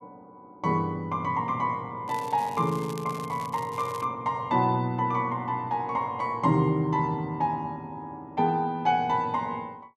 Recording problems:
crackle; from 2 to 4 s; loose cable, SNR 20 dB

